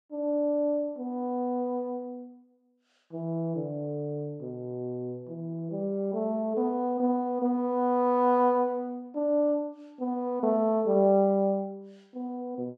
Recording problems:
none

